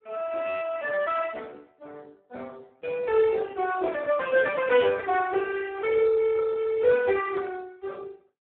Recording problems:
telephone audio; 220 Hz to 2.2 kHz, Speex

